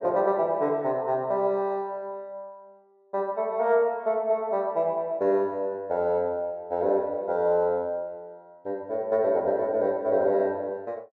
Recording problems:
none

